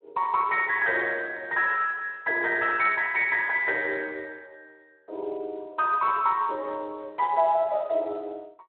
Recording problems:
phone line; 320 Hz to 3.1 kHz, Speex

